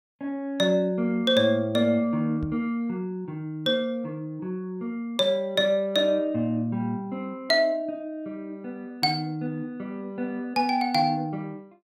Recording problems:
microphone thump; at 2.5 s; peak -4 dB vs average level

